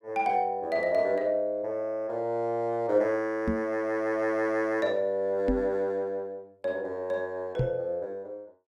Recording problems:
microphone thump; at 3.5 s, at 5.5 s and at 7.5 s; peak +4 dB vs average level

